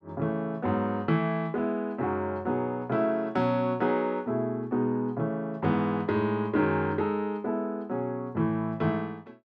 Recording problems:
none

